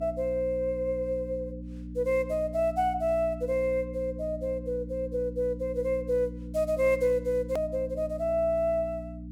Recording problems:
electrical hum; 60 Hz, harmonics up to 300 Hz, SNR 11 dB
hard cut with a click; at 7.5 s

